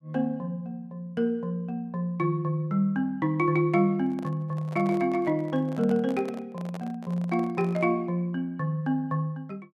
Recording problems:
microphone handling noise; from 4 to 8 s; peak -9 dB vs average level

